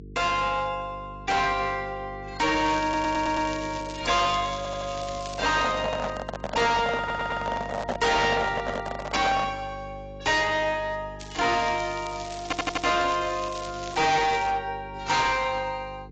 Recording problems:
lossy codec; AAC, log-spectral distance 5 dB, nothing above 7.6 kHz
distorted audio; hard clipping, uneven, signal-to-distortion ratio 6 dB
electrical hum; 50 Hz, harmonics up to 450 Hz, SNR 17 dB
crackling; 4 times, first at 2.5 s; loose cable, SNR 15 dB
audio stuttering; 4 times, first at 3 s
microphone handling noise; from 5.5 to 9.5 s; peak +2 dB vs average level

